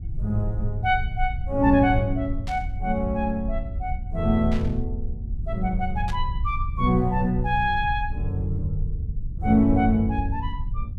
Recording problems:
low-frequency rumble; below 72 Hz, SNR 7 dB
static burst; at 2.5 s, at 4.5 s and at 6 s; peak -10 dB vs average level

